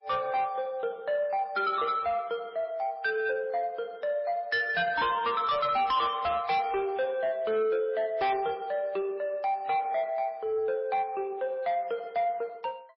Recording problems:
lossy compression; MP3, log-spectral distance 2 dB, nothing above 4.9 kHz
distortion; soft clipping, signal-to-distortion ratio 10 dB

